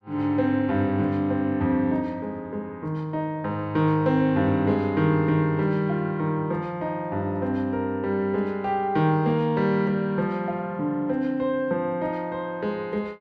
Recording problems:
none

